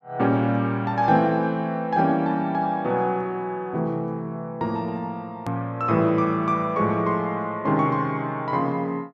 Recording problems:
click at an edit; at 5.5 s

